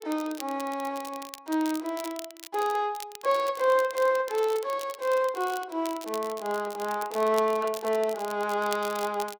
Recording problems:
crackle; vinyl, SNR 15 dB

